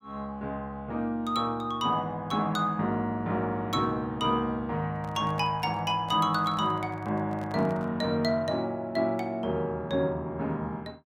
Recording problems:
handling noise; from 5 to 8 s; peak -10 dB vs average level

